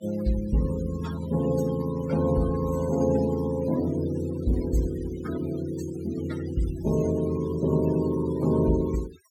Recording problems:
denoising artefacts; signal-to-artefact ratio 17 dB

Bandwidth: 17 kHz